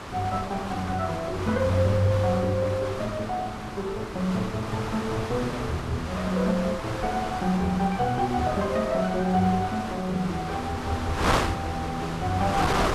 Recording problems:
wind on the microphone; below 1.6 kHz, SNR 5 dB

